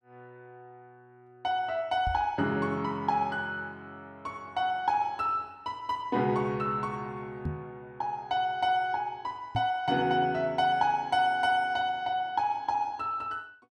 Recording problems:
microphone bump; at 2 s, at 7.5 s and at 9.5 s; peak 0 dB vs average level

